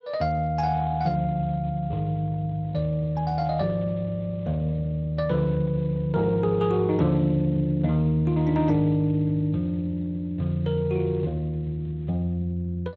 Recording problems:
codec artefacts; Speex, log-spectral distance 2 dB

